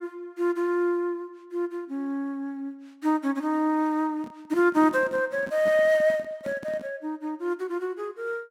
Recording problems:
handling noise; from 4 to 7 s; peak -9 dB vs average level

